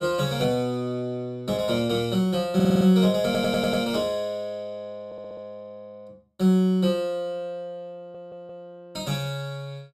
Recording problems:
stutter; 4 times, first at 2.5 s

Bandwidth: 15.5 kHz